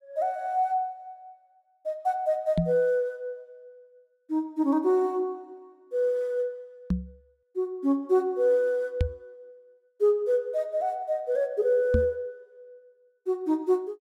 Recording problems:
knock on the microphone; 4 times, first at 2.5 s; peak +5 dB vs average level

